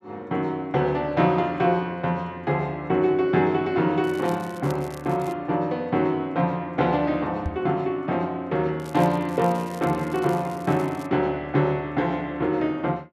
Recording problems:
crackling; from 4 to 5.5 s and from 9 to 11 s; loose cable, SNR 23 dB
knock on the microphone; at 7.5 s; peak -1 dB vs average level

